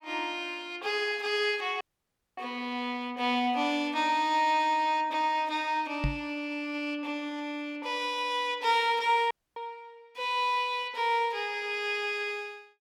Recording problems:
dropout; at 2 s for 0.5 s and at 9.5 s
microphone bump; at 6 s; peak +2 dB vs average level

